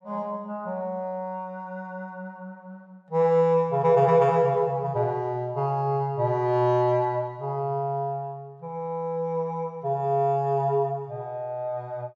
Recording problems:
none

